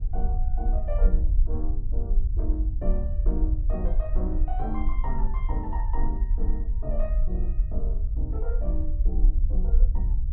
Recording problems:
rumble; below 50 Hz, SNR -10 dB

